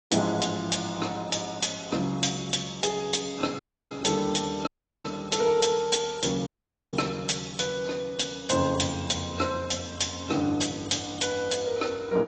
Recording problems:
lossy compression; AAC, log-spectral distance 7 dB, nothing above 8 kHz
dropout; at 3.5 s, at 4.5 s and at 6.5 s

